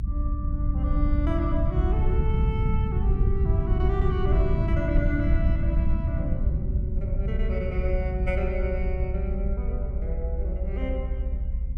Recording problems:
rumble; below 96 Hz, SNR -7 dB

